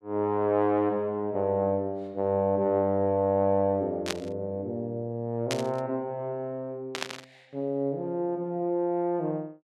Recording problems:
burst of static; at 4 s, at 5.5 s and at 7 s; peak +1 dB vs average level

